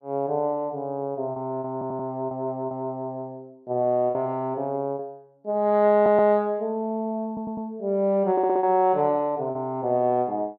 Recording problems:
lost packets; 4% of the sound replaced, filled with repeated pitch periods
audio stuttering; 4 times, first at 1.5 s

